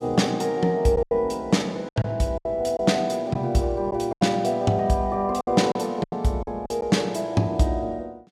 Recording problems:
lost packets; 8% of the sound replaced, filled with silence

